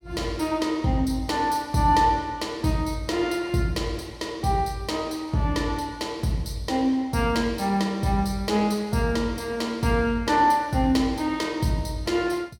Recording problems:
none

